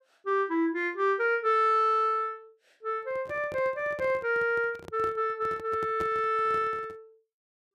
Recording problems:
handling noise; from 3 to 7 s; peak -7 dB vs average level

